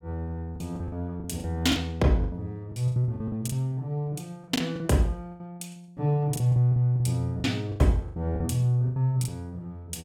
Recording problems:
packet loss; 15% of the sound replaced, filled with the last packet

